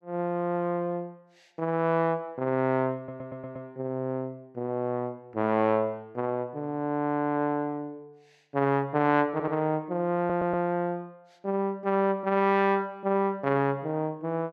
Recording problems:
audio stuttering; at 3 s, at 9.5 s and at 10 s

